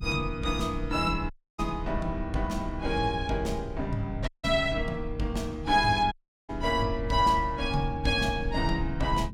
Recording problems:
rumble; below 94 Hz, SNR 9 dB
audio cutting out; at 1.5 s, at 4.5 s and at 6 s

